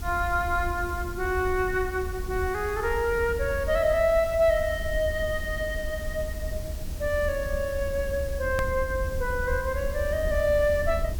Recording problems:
background hiss; slope -1 dB per octave, SNR 18 dB
rumble; below 78 Hz, SNR 8 dB
edit click; at 8.5 s

